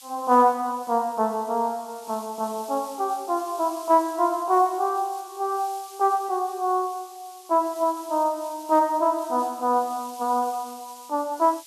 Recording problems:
hiss; slope +5 dB per octave, SNR 20 dB

